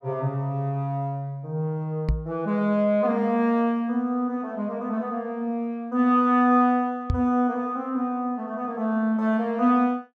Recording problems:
knock on the microphone; at 2 s and at 7 s; peak +3 dB vs average level

